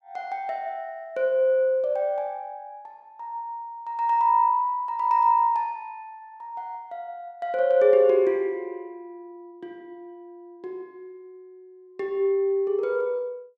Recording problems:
none

